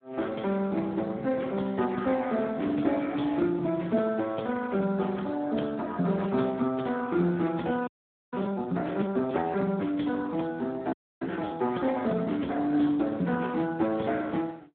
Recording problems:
telephone audio; 150 Hz to 3.5 kHz, Speex
audio freezing; at 8 s and at 11 s

